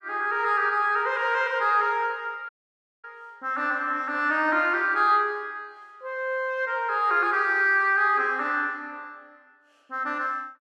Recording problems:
dropout; at 2.5 s for 0.5 s

